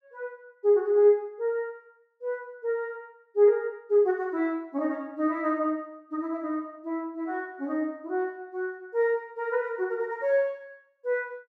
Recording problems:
none

